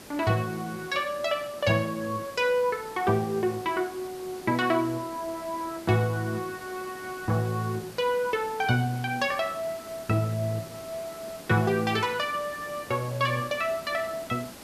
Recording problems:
hiss; slope -4 dB per octave, SNR 16 dB

